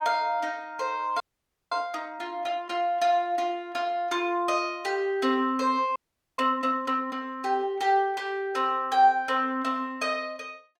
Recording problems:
audio freezing; at 1 s for 0.5 s and at 6 s

